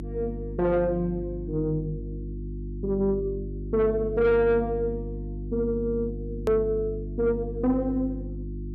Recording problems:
distortion; soft clipping, signal-to-distortion ratio 12 dB
electrical hum; 50 Hz, harmonics up to 350 Hz, SNR 8 dB
click at an edit; at 6.5 s

